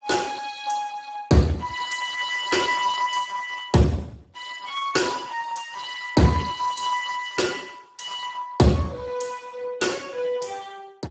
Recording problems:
codec artefacts; Speex, log-spectral distance 5 dB, nothing above 7.6 kHz

